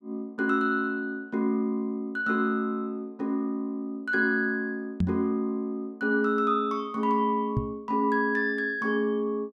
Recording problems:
knock on the microphone; at 5 s and at 7.5 s; peak +4 dB vs average level

